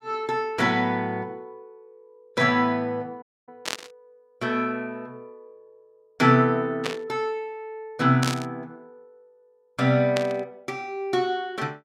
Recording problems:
audio cutting out; at 3 s
static burst; 4 times, first at 3.5 s; peak 0 dB vs average level

